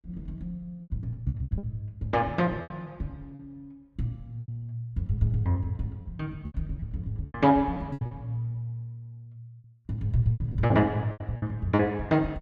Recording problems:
lost packets; 10% of the sound replaced, filled with repeated pitch periods

